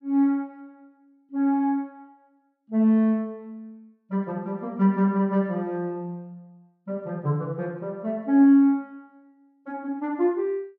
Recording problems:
none

